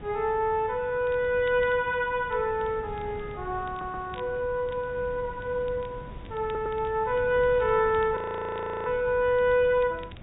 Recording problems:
low-pass filter; nothing above 4 kHz
wind noise; below 250 Hz, SNR 17 dB
crackle; vinyl, SNR 29 dB
stutter; at 3.5 s and at 6.5 s
audio freezing; at 8 s for 0.5 s

